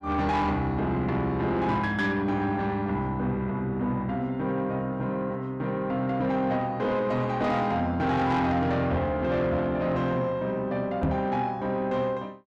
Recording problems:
distorted audio; soft clipping, signal-to-distortion ratio 11 dB
microphone thump; at 11 s; peak +4 dB vs average level

